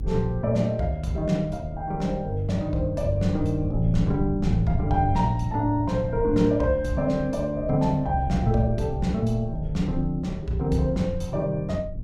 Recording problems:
rumble; below 120 Hz, SNR 10 dB

